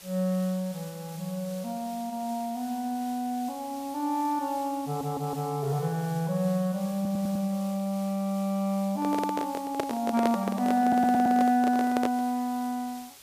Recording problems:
background hiss; slope +1 dB per octave, SNR 18 dB
audio stuttering; at 5 s, at 7 s and at 11 s
handling noise; from 9 to 12 s; peak +2 dB vs average level

